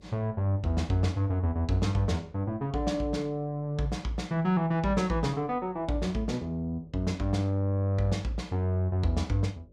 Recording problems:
electrical hum; 50 Hz, harmonics up to 600 Hz, SNR 28 dB

